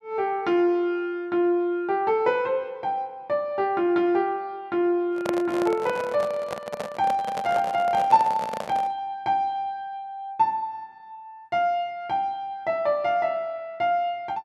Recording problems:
microphone handling noise; from 5 to 9 s; peak 0 dB vs average level

